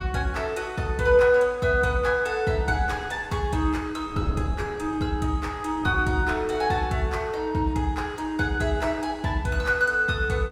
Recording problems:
wind noise; below 350 Hz, SNR 17 dB

